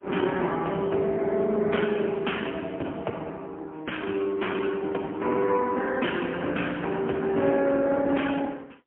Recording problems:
telephone audio; 190 Hz to 3.2 kHz, AMR-NB, then MP3

